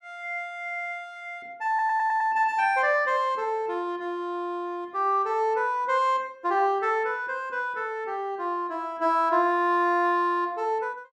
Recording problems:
audio stuttering; at 1.5 s

